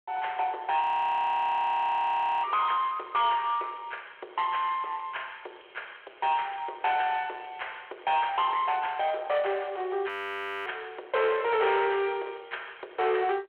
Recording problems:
telephone audio; 320 Hz to 3.4 kHz, G.726
distortion; soft clipping, signal-to-distortion ratio 7 dB
frozen audio; at 1 s for 1.5 s and at 10 s for 0.5 s

